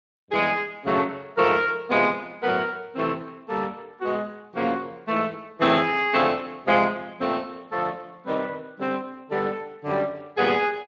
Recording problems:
codec artefacts; Speex, log-spectral distance 4 dB

